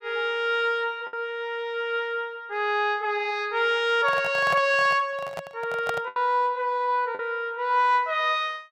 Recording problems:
lost packets; 2% of the sound replaced, filled with the last packet
handling noise; from 4 to 6 s; peak -2 dB vs average level

